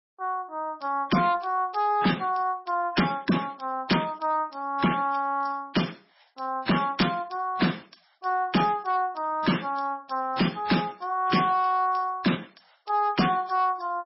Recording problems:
codec artefacts; MP3, then MP3, log-spectral distance 5 dB, nothing above 5.5 kHz
distortion; hard clipping, signal-to-distortion ratio 11 dB

